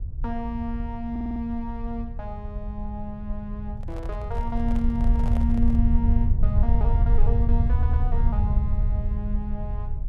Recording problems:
rumble; below 76 Hz, SNR -6 dB
audio stuttering; at 1 s and at 7.5 s
handling noise; from 4 to 6 s; peak -3 dB vs average level

